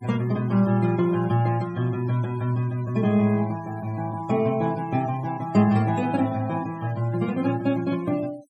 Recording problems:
denoising artefacts; signal-to-artefact ratio 22 dB

